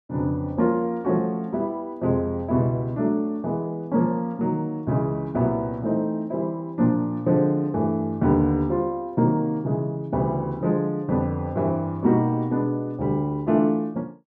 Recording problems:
none

